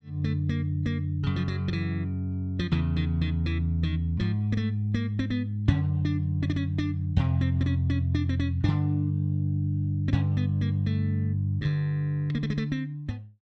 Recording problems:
none

